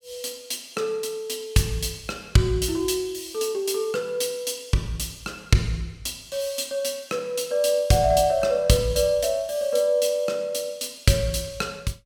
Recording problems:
none

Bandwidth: 17 kHz